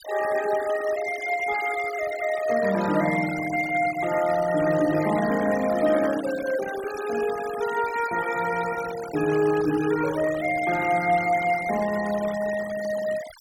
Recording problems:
denoising artefacts; signal-to-artefact ratio 13 dB

